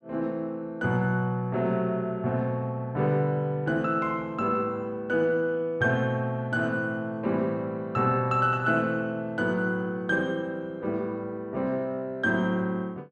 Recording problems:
none

